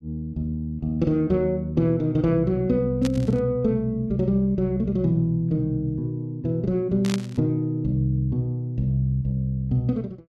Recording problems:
static burst; at 3 s and at 7 s; peak -4 dB vs average level

